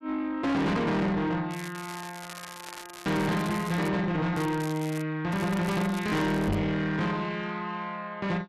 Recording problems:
distortion; soft clipping, signal-to-distortion ratio 7 dB
crackling; from 1.5 to 4 s, at 4.5 s and from 5.5 to 6.5 s; loose cable, SNR 14 dB
knock on the microphone; at 6.5 s; peak +4 dB vs average level

